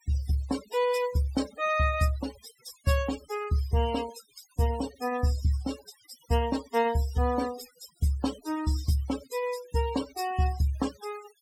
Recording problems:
denoising artefacts; signal-to-artefact ratio 14 dB

